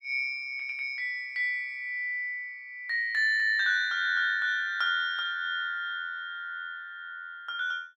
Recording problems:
none

